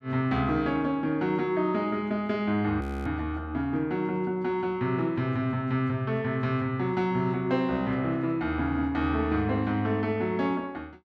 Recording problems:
audio freezing; at 3 s

